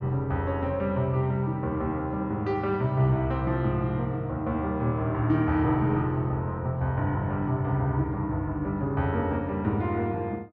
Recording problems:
treble missing; nothing above 7.1 kHz

